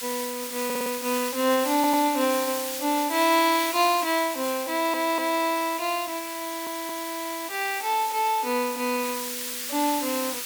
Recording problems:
hiss; slope +4 dB per octave, SNR 7 dB
audio stuttering; 4 times, first at 0.5 s

